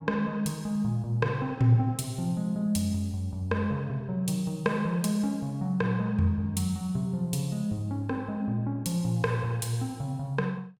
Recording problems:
none

